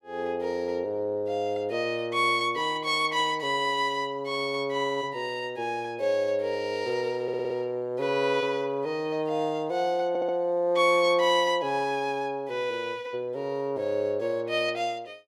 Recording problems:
audio stuttering; at 7 s and at 10 s

